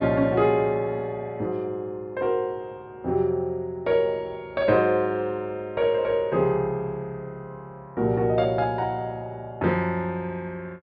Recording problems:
low-pass filter; nothing above 5.5 kHz

